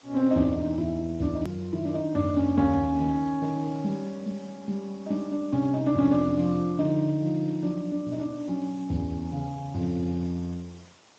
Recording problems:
lossy codec; Speex, log-spectral distance 3 dB, nothing above 13.1 kHz
hiss; slope -2 dB per octave, SNR 27 dB
click at an edit; at 1.5 s

